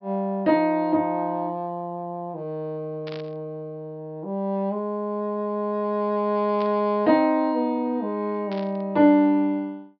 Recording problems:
low-pass filter; nothing above 5.5 kHz
static burst; at 3 s, at 6.5 s and at 8.5 s; peak -12 dB vs average level

